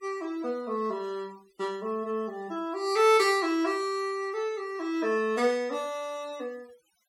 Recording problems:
noise reduction artefacts; signal-to-artefact ratio 25 dB

